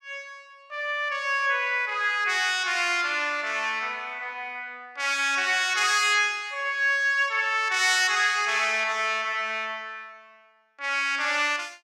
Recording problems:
none

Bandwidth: 16 kHz